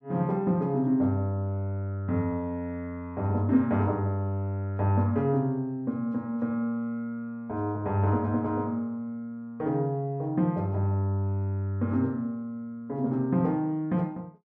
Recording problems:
none

